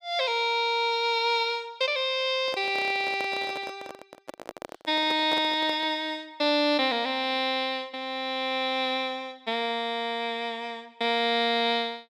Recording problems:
microphone handling noise; from 2.5 to 6 s; peak -5 dB vs average level

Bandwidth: 15 kHz